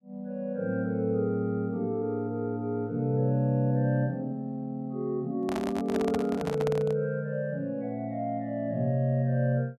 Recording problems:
microphone handling noise; from 5.5 to 7 s; peak -1 dB vs average level

